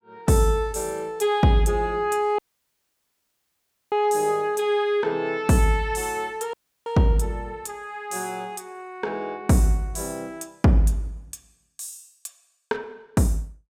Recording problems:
dropout; at 2.5 s for 1.5 s and at 6.5 s

